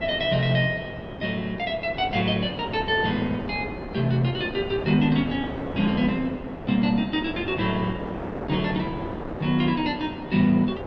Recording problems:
wind noise; below 680 Hz, SNR 9 dB

